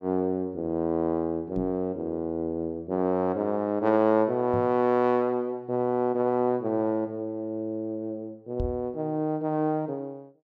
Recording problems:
knock on the microphone; at 1.5 s, at 4.5 s and at 8.5 s; peak -1 dB vs average level

